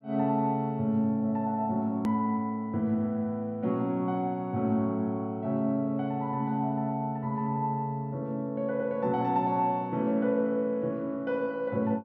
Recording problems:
edit click; at 2 s

